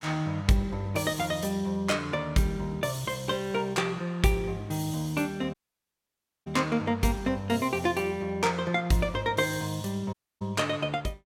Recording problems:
audio cutting out; at 5.5 s for 1 s and at 10 s

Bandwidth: 16.5 kHz